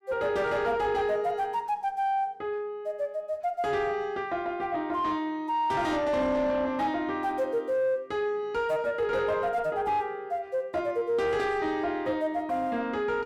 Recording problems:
distorted audio; soft clipping, signal-to-distortion ratio 11 dB

